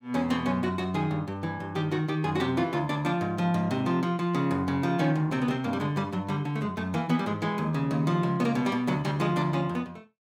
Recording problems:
none

